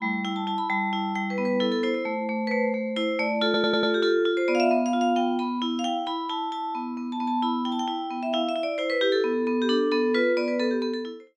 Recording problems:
stutter; at 3.5 s

